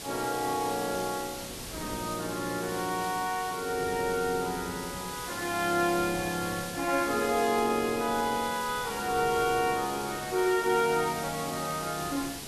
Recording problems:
hiss; slope -1 dB per octave, SNR 9 dB
wind on the microphone; below 450 Hz, SNR 18 dB

